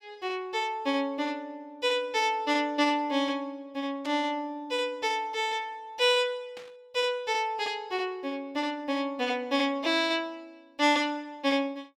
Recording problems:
static burst; at 4 s and at 6.5 s; peak -10 dB vs average level

